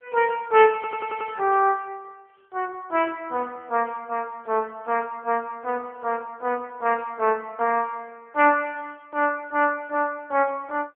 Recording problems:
phone line; 320 Hz to 3.2 kHz, AMR-NB
stutter; at 1 s

